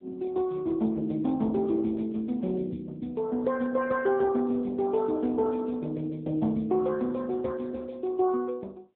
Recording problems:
telephone audio; 170 Hz to 3.7 kHz, AMR-NB

